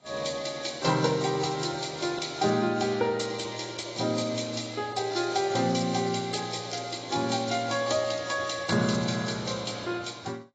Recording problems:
codec artefacts; AAC, log-spectral distance 9 dB, nothing above 7.6 kHz

